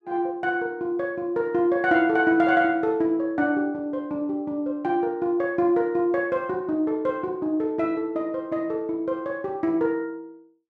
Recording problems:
none

